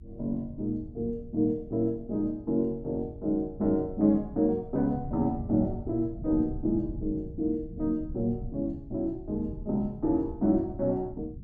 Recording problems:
rumble; below 140 Hz, SNR 14 dB

